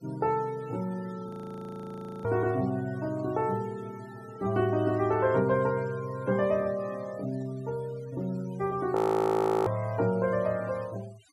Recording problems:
denoising artefacts; signal-to-artefact ratio 22 dB
frozen audio; at 1.5 s for 1 s and at 9 s for 0.5 s

